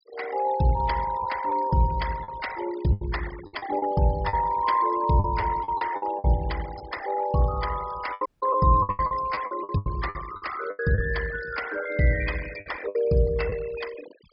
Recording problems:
treble cut off; nothing above 5.5 kHz
noise reduction artefacts; signal-to-artefact ratio 15 dB
packet loss; 10% of the sound replaced, filled with the last packet
dropout; at 8.5 s

